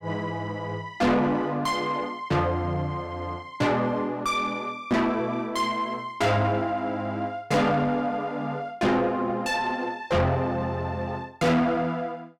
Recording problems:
distorted audio; soft clipping, signal-to-distortion ratio 7 dB

